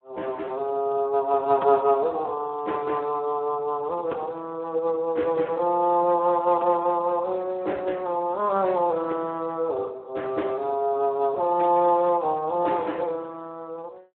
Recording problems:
phone line; 260 Hz to 3.3 kHz, Speex

